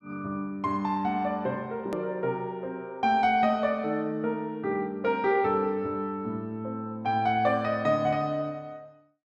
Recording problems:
hard cut with a click; at 2 s

